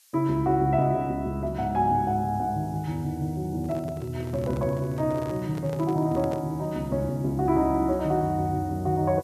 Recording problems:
hiss; slope +5 dB per octave, SNR 28 dB
microphone handling noise; from 3.5 to 6.5 s; peak -7 dB vs average level

